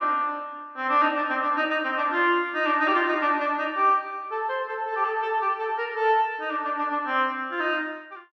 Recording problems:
none

